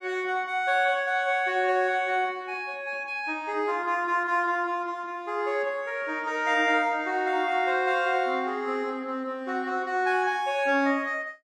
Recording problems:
none

